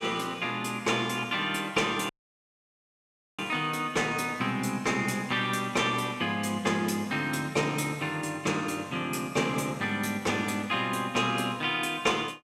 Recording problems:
audio cutting out; at 2 s for 1.5 s

